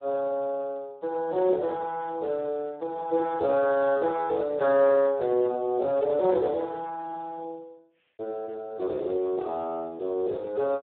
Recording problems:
telephone audio; 300 Hz to 3.3 kHz, Speex

